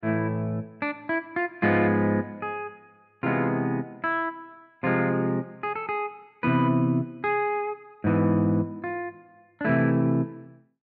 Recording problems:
none

